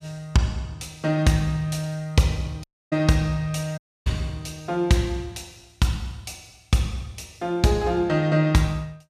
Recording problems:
dropout; at 2.5 s and at 4 s

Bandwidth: 14.5 kHz